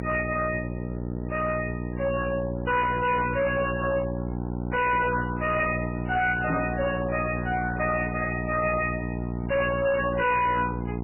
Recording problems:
lossy codec; MP3, log-spectral distance 5 dB, nothing above 2.5 kHz
distorted audio; hard clipping, uneven, signal-to-distortion ratio 6 dB
hum; 60 Hz, harmonics up to 1 kHz, SNR 5 dB
microphone thump; at 6.5 s; peak +3 dB vs average level

